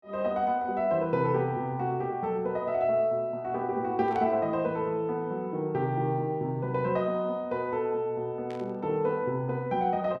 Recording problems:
static burst; at 4 s and at 8.5 s; peak -13 dB vs average level

